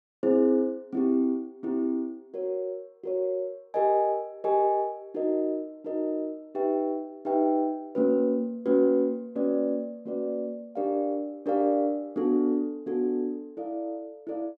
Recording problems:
none

